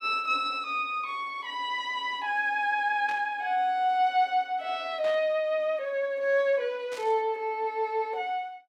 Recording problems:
static burst; at 3 s, at 5 s and at 7 s; peak -11 dB vs average level

